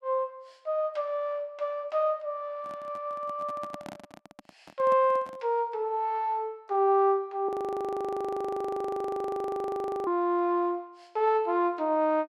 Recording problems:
handling noise; from 2.5 to 5.5 s; peak -7 dB vs average level
audio freezing; at 7.5 s for 2.5 s

